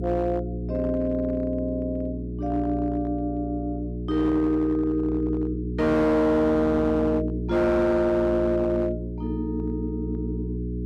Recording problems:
distorted audio; hard clipping, signal-to-distortion ratio 11 dB
hum; 60 Hz, harmonics up to 420 Hz, SNR 7 dB

